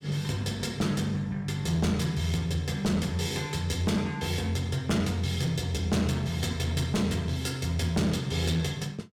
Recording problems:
distorted audio; hard clipping, uneven, signal-to-distortion ratio 10 dB

